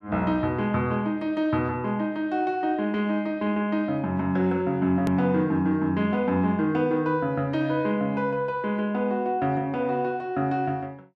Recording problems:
edit click; at 5 s

